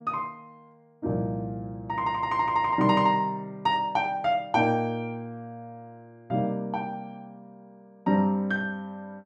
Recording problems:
none

